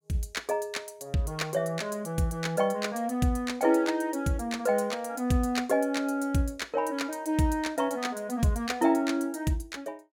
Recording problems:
none

